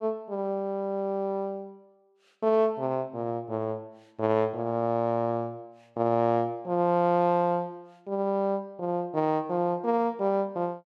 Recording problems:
none

